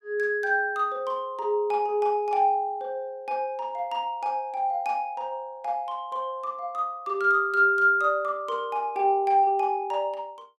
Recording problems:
none

